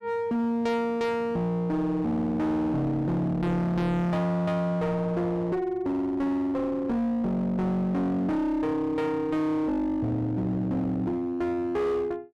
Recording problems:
distortion; hard clipping, uneven, signal-to-distortion ratio 6 dB

